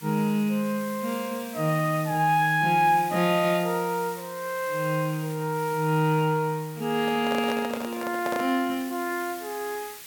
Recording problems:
hiss; slope +1 dB per octave, SNR 16 dB
microphone handling noise; from 7 to 8.5 s; peak -2 dB vs average level

